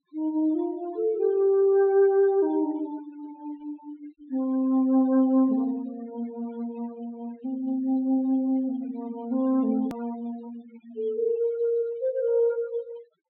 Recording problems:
treble cut off; nothing above 4 kHz
denoising artefacts; signal-to-artefact ratio 24 dB
click at an edit; at 10 s

